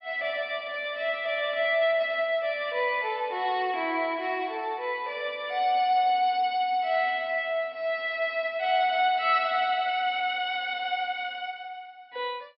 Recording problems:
treble cut off; nothing above 5.5 kHz

